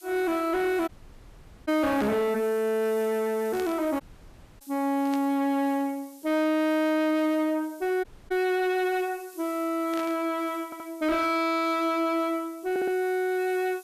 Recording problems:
distortion; soft clipping, signal-to-distortion ratio 7 dB
background hiss; SNR 23 dB
dropout; at 1 s for 1 s, at 4 s for 0.5 s and at 8 s
burst of static; 4 times, first at 2 s; peak -10 dB vs average level
stutter; at 11 s and at 13 s

